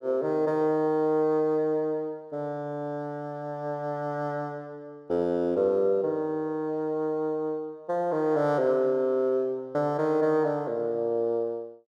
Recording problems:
none

